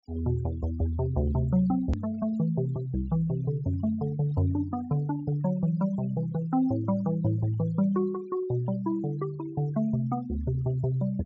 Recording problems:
low-pass filter; nothing above 8 kHz
noise reduction artefacts; signal-to-artefact ratio 22 dB
click at an edit; at 2 s

